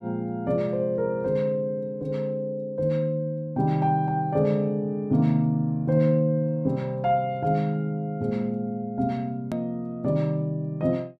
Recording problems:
hard cut with a click; at 9.5 s

